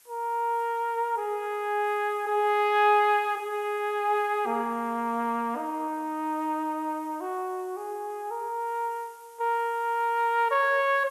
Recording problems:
hiss; slope +1 dB per octave, SNR 27 dB

